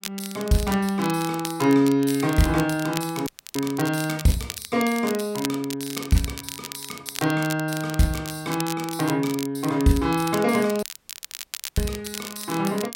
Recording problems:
crackling; vinyl, SNR 11 dB
dropout; at 3.5 s and at 11 s for 1 s

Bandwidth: 16 kHz